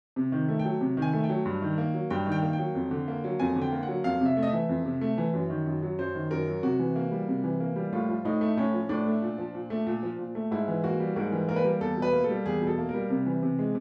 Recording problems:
none

